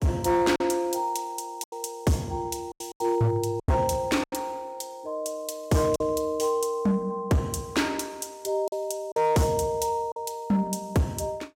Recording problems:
distortion; hard clipping, signal-to-distortion ratio 11 dB
packet loss; 5% of the sound replaced, filled with silence

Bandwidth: 16.5 kHz